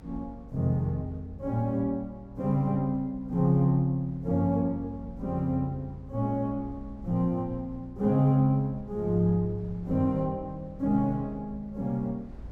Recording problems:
low-frequency rumble; below 92 Hz, SNR 19 dB

